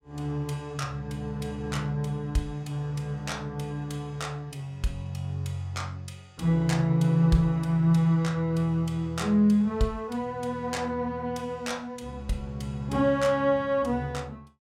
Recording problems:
none

